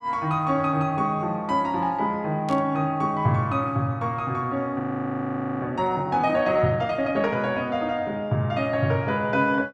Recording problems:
static burst; at 2.5 s; peak -12 dB vs average level
audio freezing; at 5 s for 1 s

